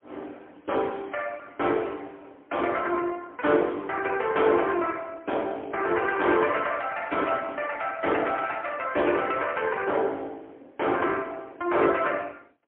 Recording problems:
telephone audio; 240 Hz to 3.4 kHz, AMR-NB, then MP3

